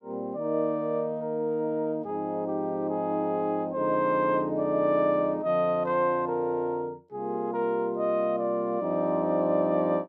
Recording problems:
none

